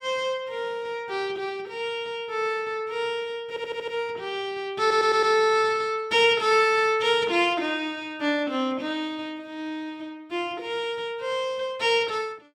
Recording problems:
stutter; at 3.5 s and at 5 s

